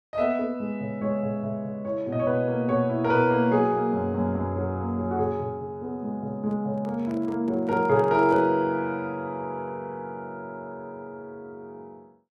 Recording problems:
microphone handling noise; from 6.5 to 8.5 s; peak -11 dB vs average level

